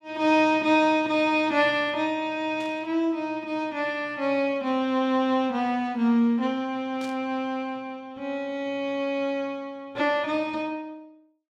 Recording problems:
burst of static; at 2.5 s and at 7 s; peak -13 dB vs average level

